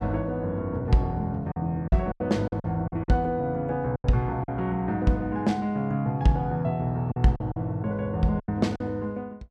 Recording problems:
packet loss; 7% of the sound replaced, filled with silence

